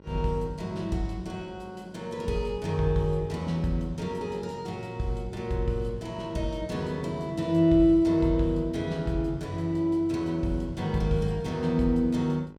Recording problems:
hum; 50 Hz, harmonics up to 1.6 kHz, SNR 23 dB

